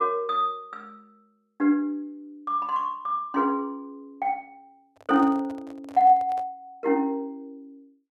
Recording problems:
microphone handling noise; from 5 to 6.5 s; peak -12 dB vs average level

